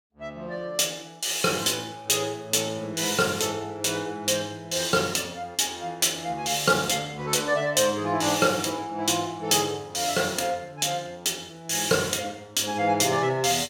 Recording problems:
none

